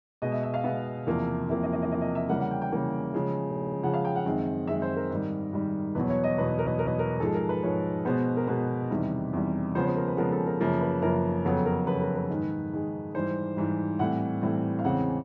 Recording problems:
treble missing; nothing above 8 kHz
audio stuttering; at 1.5 s, at 3.5 s and at 6.5 s

